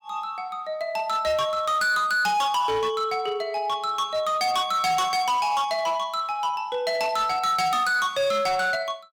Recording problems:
distorted audio; hard clipping, signal-to-distortion ratio 11 dB

